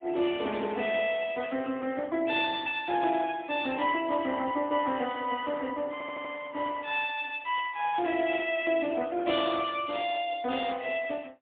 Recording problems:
telephone audio; 220 Hz to 3.9 kHz, AMR-NB, then MP3
static burst; at 3 s, at 5 s and at 8.5 s; peak -15 dB vs average level
audio stuttering; at 6 s

